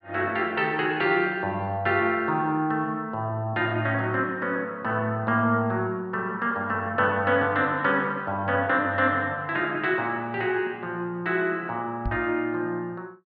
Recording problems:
treble cut off; nothing above 5.5 kHz
microphone thump; at 12 s; peak -1 dB vs average level

